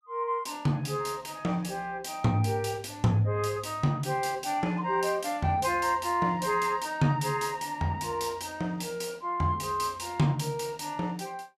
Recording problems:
none

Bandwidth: 15 kHz